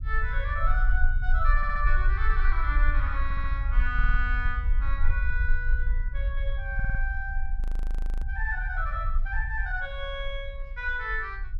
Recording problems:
low-frequency rumble; below 48 Hz, SNR -3 dB
audio stuttering; 4 times, first at 1.5 s
audio freezing; at 7.5 s for 0.5 s

